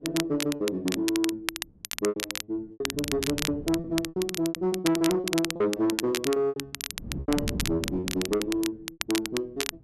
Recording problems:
distorted audio; soft clipping, signal-to-distortion ratio 11 dB
wind on the microphone; below 250 Hz, SNR 9 dB
crackle; vinyl, SNR 5 dB
packet loss; 15% of the sound replaced, filled with repeated pitch periods

